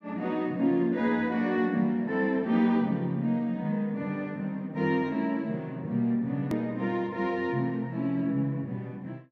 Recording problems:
edit click; at 6.5 s

